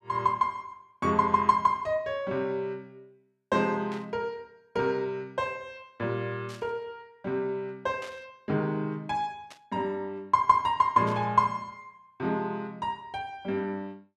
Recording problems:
static burst; 5 times, first at 4 s; peak -12 dB vs average level

